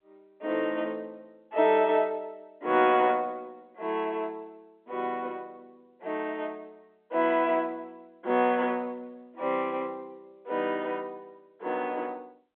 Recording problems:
phone line; 260 Hz to 3.6 kHz, G.711

